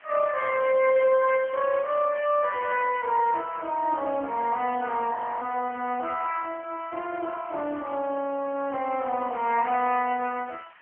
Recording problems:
phone line; 260 Hz to 3.1 kHz, AMR-NB
hiss; SNR 25 dB
frozen audio; at 5 s

